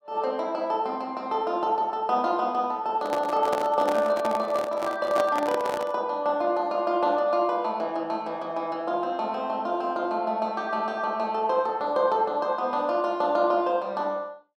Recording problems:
handling noise; from 3 to 6 s; peak 0 dB vs average level

